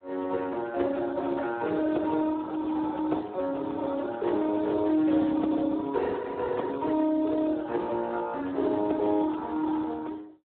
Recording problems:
phone line; 240 Hz to 3.6 kHz, Speex

